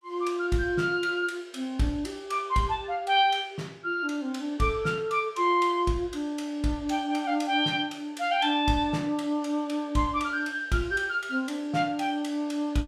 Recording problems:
none

